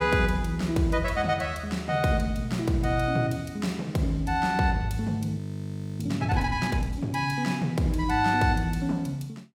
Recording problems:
frozen audio; at 5.5 s for 0.5 s

